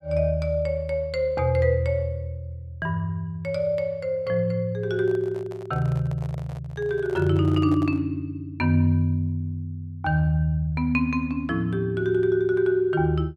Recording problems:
handling noise; from 5 to 8 s; peak -12 dB vs average level

